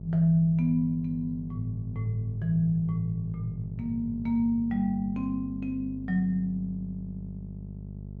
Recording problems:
hum; 50 Hz, harmonics up to 450 Hz, SNR 12 dB

